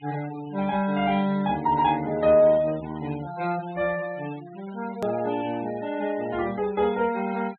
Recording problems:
treble missing; nothing above 4 kHz
noise reduction artefacts; signal-to-artefact ratio 20 dB
edit click; at 5 s

